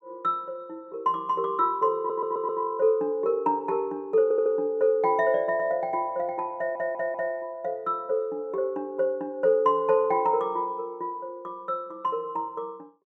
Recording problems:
audio stuttering; at 2 s, at 4 s and at 6.5 s

